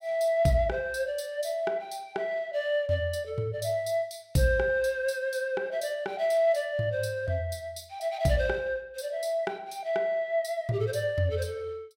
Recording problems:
none

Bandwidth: 16 kHz